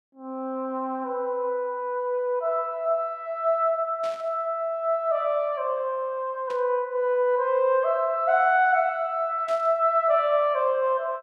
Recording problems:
burst of static; at 4 s, at 6.5 s and at 9.5 s; peak -14 dB vs average level

